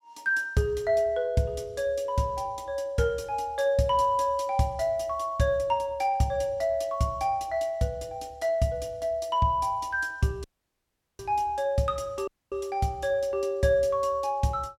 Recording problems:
dropout; at 10 s for 1 s and at 12 s

